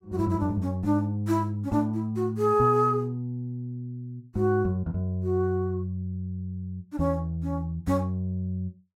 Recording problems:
none

